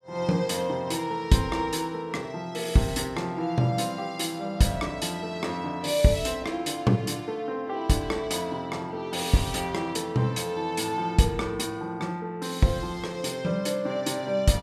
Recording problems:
none

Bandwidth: 14.5 kHz